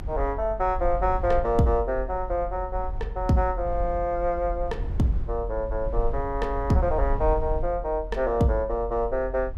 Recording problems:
low-frequency rumble; below 54 Hz, SNR 7 dB

